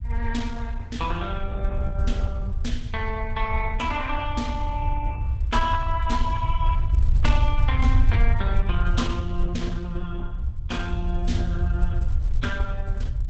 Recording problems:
lossy codec; Opus, log-spectral distance 2 dB, nothing above 8 kHz
rumble; below 74 Hz, SNR -3 dB

